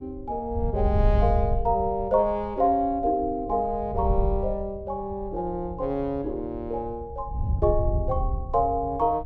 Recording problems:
wind on the microphone; below 88 Hz, SNR 3 dB

